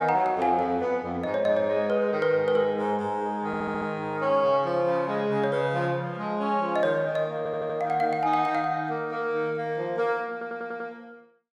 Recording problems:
audio stuttering; at 3.5 s, at 7.5 s and at 10 s

